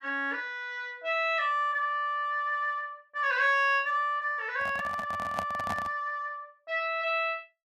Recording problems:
microphone handling noise; from 4.5 to 6 s; peak -1 dB vs average level

